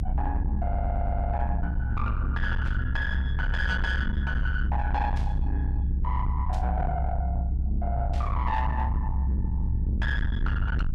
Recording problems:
distorted audio; soft clipping, signal-to-distortion ratio 8 dB
rumble; below 72 Hz, strongest tone 64 Hz, SNR -3 dB
audio stuttering; at 0.5 s
burst of static; 4 times, first at 2.5 s; peak -11 dB vs average level

